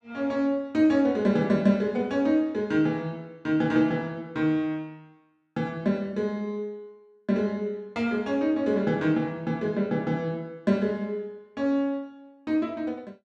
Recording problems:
none

